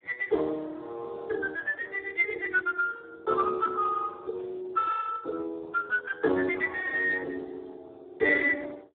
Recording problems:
phone line; 260 Hz to 3.7 kHz, Speex

